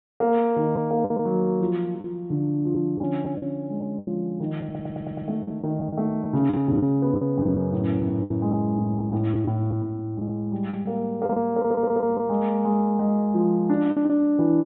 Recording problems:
treble cut off; nothing above 4 kHz
lost packets; 8% of the sound replaced, filled with the last packet
audio stuttering; at 4.5 s and at 12 s

